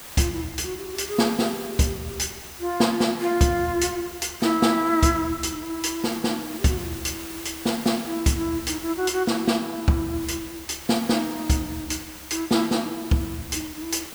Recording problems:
hiss; slope -1 dB per octave, SNR 13 dB

